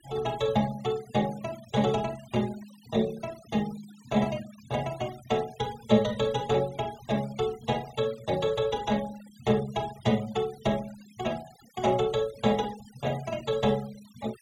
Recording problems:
denoising artefacts; signal-to-artefact ratio 20 dB

